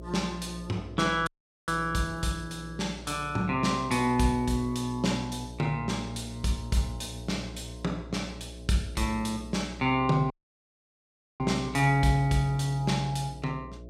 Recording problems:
electrical hum; 60 Hz, harmonics up to 660 Hz, SNR 15 dB
audio cutting out; at 1.5 s and at 10 s for 1 s

